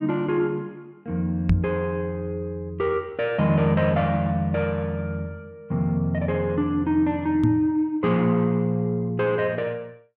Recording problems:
microphone bump; at 1.5 s and at 7.5 s; peak +6 dB vs average level

